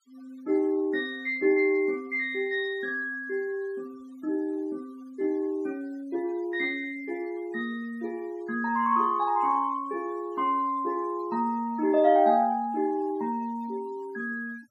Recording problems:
denoising artefacts; signal-to-artefact ratio 26 dB

